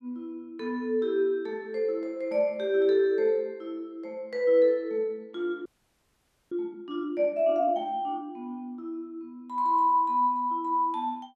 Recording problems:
audio freezing; at 5.5 s for 1 s

